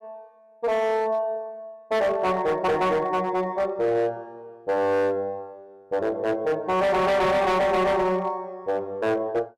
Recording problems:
distorted audio; hard clipping, signal-to-distortion ratio 8 dB

